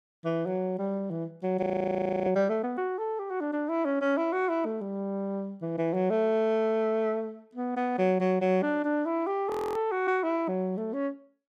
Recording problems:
frozen audio; at 1.5 s for 0.5 s and at 9.5 s

